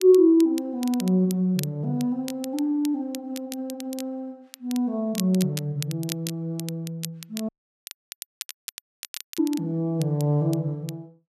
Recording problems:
crackling; vinyl, SNR 14 dB
dropout; at 7.5 s for 2 s

